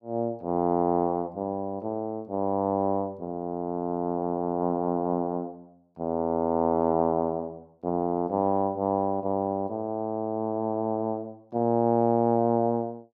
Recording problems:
none

